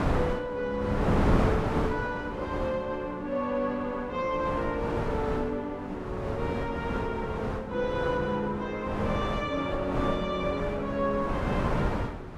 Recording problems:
wind noise; below 700 Hz, SNR 1 dB

